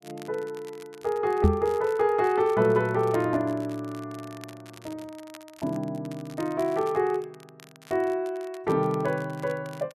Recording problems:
crackle; vinyl, SNR 24 dB
knock on the microphone; at 1.5 s; peak +9 dB vs average level

